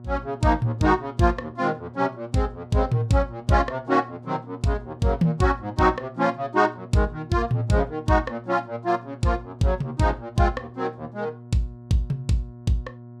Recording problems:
hum; 60 Hz, harmonics up to 1.1 kHz, SNR 18 dB

